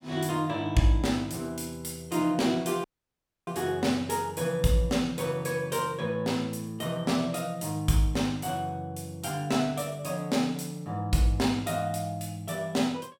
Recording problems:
audio cutting out; at 3 s for 0.5 s

